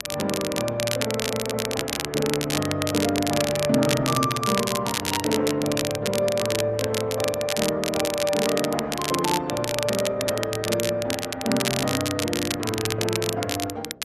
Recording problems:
lossy compression; Opus, log-spectral distance 2 dB
hum; 60 Hz, harmonics up to 660 Hz, SNR 25 dB
crackle; vinyl, SNR 3 dB
stutter; at 1 s

